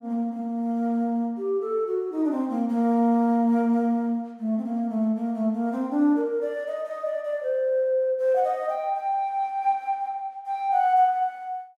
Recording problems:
none

